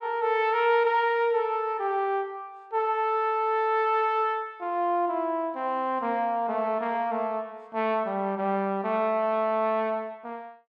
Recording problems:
none

